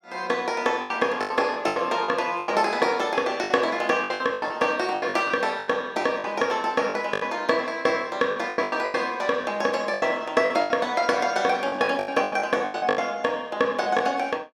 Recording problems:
lost packets; 14% of the sound replaced, filled with the last packet

